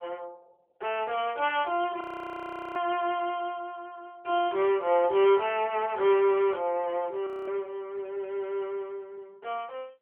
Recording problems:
phone line; 300 Hz to 3.3 kHz, AMR-NB
audio freezing; at 2 s for 1 s and at 7.5 s

